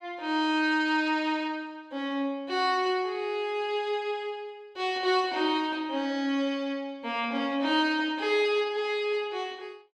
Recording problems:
none

